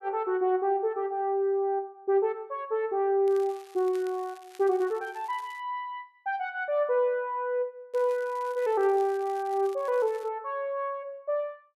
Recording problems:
crackling; from 3.5 to 5.5 s and from 8 to 10 s; loose cable, SNR 26 dB

